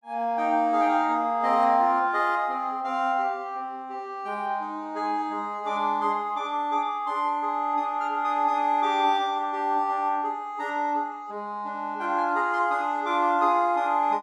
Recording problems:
none

